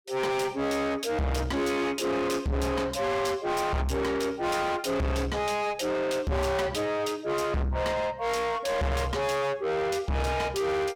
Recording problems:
distorted audio; soft clipping, signal-to-distortion ratio 6 dB

